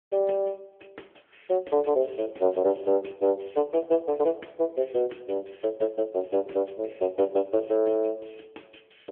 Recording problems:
telephone audio; 240 Hz to 3.4 kHz, AMR-NB

